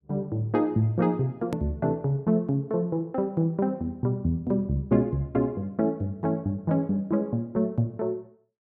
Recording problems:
click at an edit; at 1.5 s

